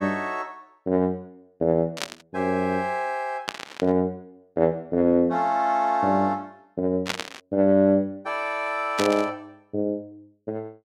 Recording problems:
burst of static; 4 times, first at 2 s; peak +2 dB vs average level

